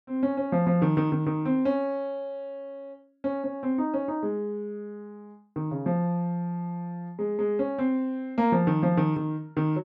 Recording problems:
none

